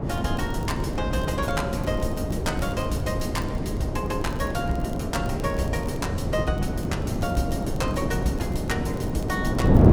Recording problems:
wind on the microphone; below 320 Hz, SNR -3 dB
crackling; vinyl, SNR 23 dB

